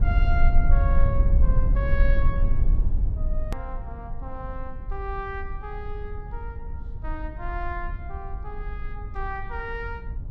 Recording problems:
low-frequency rumble; below 54 Hz, strongest tone 20 Hz, SNR -8 dB
click at an edit; at 3.5 s

